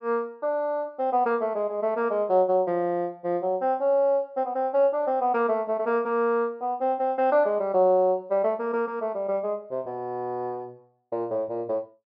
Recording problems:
treble missing; nothing above 5.5 kHz

